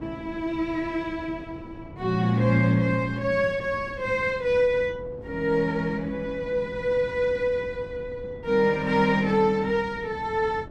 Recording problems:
wind noise; below 330 Hz, SNR 18 dB

